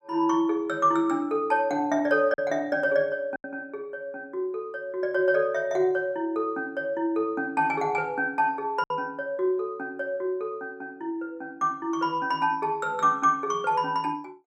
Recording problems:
packet loss; 1.3% of the sound replaced, filled with silence

